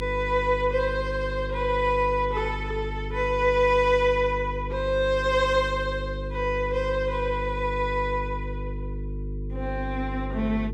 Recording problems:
electrical hum; 50 Hz, harmonics up to 450 Hz, SNR 8 dB

